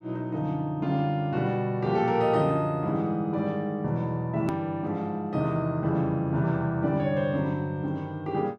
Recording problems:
edit click; at 4.5 s

